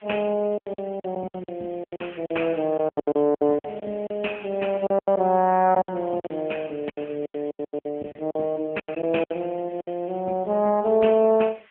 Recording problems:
telephone audio; 240 Hz to 3.2 kHz, AMR-NB
hiss; SNR 27 dB
lost packets; 15% of the sound replaced, filled with silence

